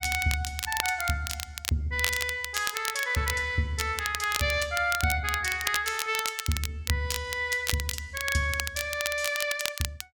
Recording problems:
crackle; vinyl, SNR 5 dB

